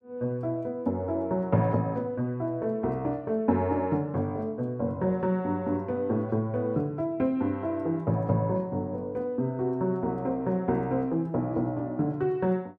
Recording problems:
none

